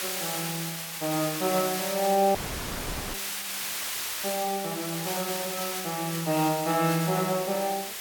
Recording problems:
hiss; slope +2 dB per octave, SNR 3 dB
audio cutting out; at 2.5 s for 1 s

